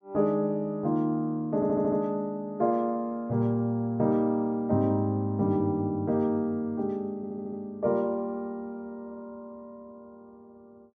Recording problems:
audio stuttering; at 1.5 s and at 7 s

